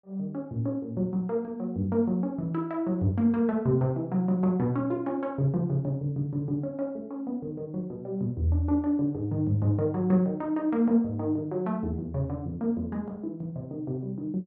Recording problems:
none

